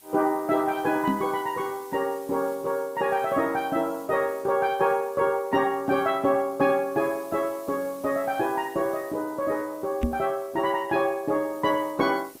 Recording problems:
codec artefacts; Opus, log-spectral distance 5 dB
background hiss; slope +1 dB per octave, SNR 23 dB
microphone bump; at 1 s and at 10 s; peak +4 dB vs average level

